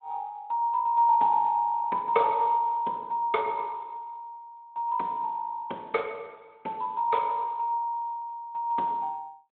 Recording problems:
phone line; 300 Hz to 3.7 kHz, Speex

